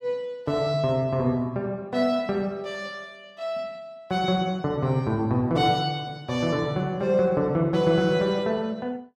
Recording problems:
none

